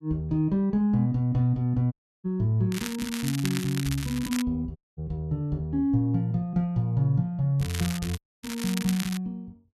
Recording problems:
dropout; at 2 s, at 5 s and at 8 s
crackling; from 2.5 to 4.5 s and from 7.5 to 9 s; loose cable, SNR 9 dB

